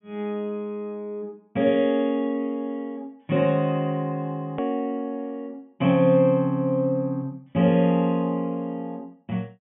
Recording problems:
treble cut off; nothing above 3.5 kHz
hard cut with a click; at 4.5 s

